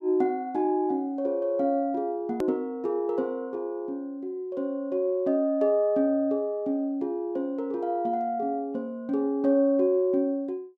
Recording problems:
hard cut with a click; at 2.5 s

